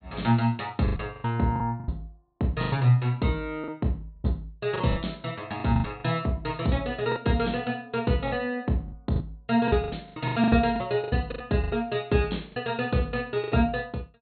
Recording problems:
treble missing; nothing above 4.3 kHz
packet loss; 12% of the sound replaced, filled with the last packet

